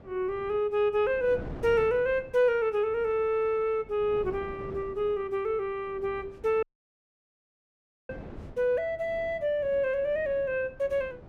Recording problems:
wind noise; below 430 Hz, SNR 18 dB
dropout; at 6.5 s for 1.5 s

